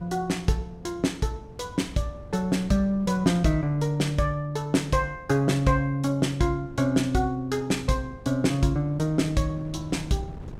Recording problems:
wind on the microphone; below 220 Hz, SNR 19 dB

